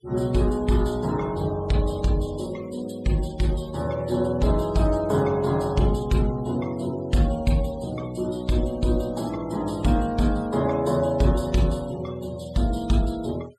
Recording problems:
denoising artefacts; signal-to-artefact ratio 22 dB

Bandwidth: 13 kHz